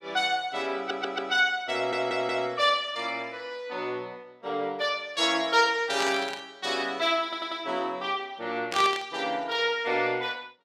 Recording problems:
stutter; at 1 s, at 2 s and at 7 s
burst of static; at 6 s and at 8.5 s; peak 0 dB vs average level

